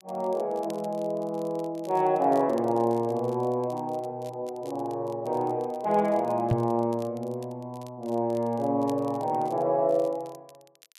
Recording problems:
crackle; vinyl, SNR 27 dB
microphone bump; at 6.5 s; peak +6 dB vs average level

